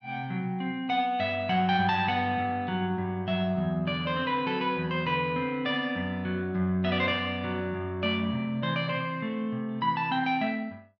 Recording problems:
low-pass filter; nothing above 7 kHz

